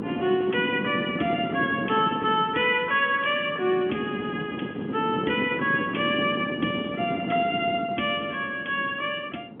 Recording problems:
telephone audio; 190 Hz to 3.4 kHz, G.711
wind on the microphone; below 390 Hz, SNR 7 dB

